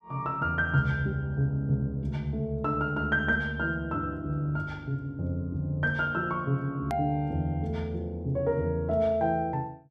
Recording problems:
hard cut with a click; at 7 s

